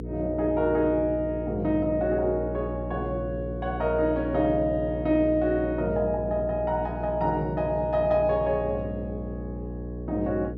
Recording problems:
electrical hum; 60 Hz, harmonics up to 480 Hz, SNR 8 dB

